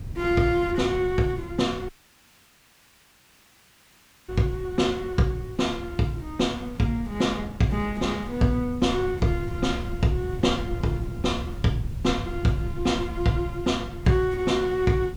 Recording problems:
background hiss; slope 0 dB per octave, SNR 28 dB
rumble; below 110 Hz, SNR 11 dB
wind on the microphone; below 290 Hz, SNR 20 dB
dropout; at 2 s for 2.5 s

